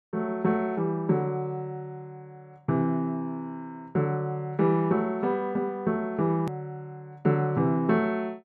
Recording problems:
hard cut with a click; at 6.5 s

